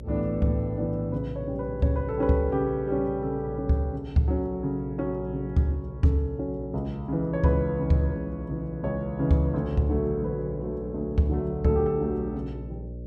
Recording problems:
hum; 60 Hz, harmonics up to 600 Hz, SNR 13 dB

